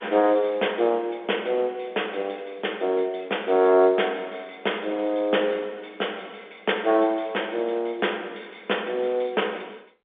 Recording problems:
phone line; 280 Hz to 3.6 kHz, G.711

